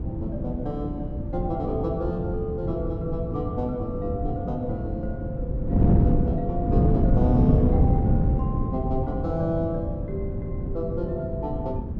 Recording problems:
wind on the microphone; below 210 Hz, SNR -4 dB

